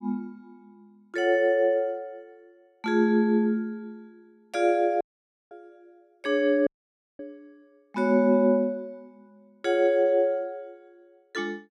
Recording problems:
dropout; at 5 s for 0.5 s and at 6.5 s for 0.5 s

